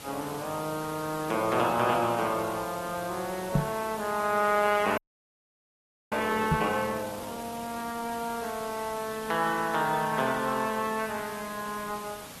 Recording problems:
codec artefacts; AAC, log-spectral distance 9 dB
background hiss; slope -2 dB per octave, SNR 12 dB
microphone bump; at 3.5 s and at 6.5 s; peak +8 dB vs average level
audio freezing; at 5 s for 1 s

